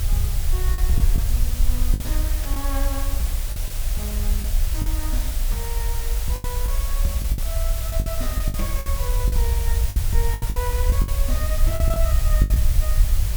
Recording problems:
electrical hum; 50 Hz, harmonics up to 600 Hz, SNR 25 dB
hiss; SNR -1 dB
low-frequency rumble; below 62 Hz, SNR -9 dB
crackling; vinyl, SNR 23 dB
packet loss; 9% of the sound replaced, filled with the last packet

